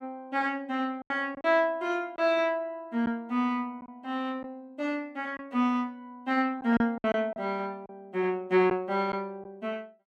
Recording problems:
packet loss; 4% of the sound replaced, filled with silence

